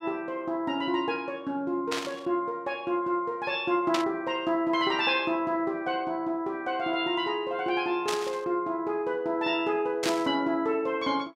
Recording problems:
burst of static; 4 times, first at 2 s; peak +2 dB vs average level

